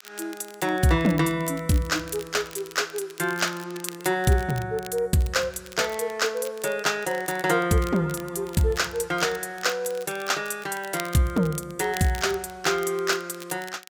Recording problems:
crackling; vinyl, SNR 18 dB

